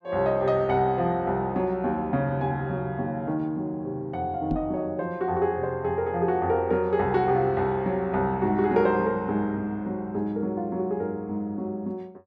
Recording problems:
microphone bump; at 4.5 s; peak +1 dB vs average level

